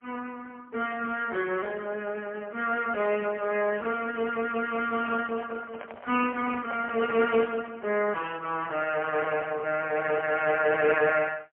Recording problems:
phone line; 260 Hz to 2.6 kHz, AMR-NB, then MP3
handling noise; from 5 to 8 s; peak -7 dB vs average level

